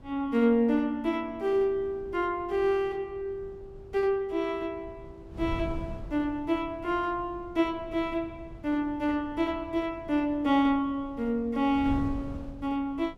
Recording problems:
wind on the microphone; below 150 Hz, SNR 16 dB

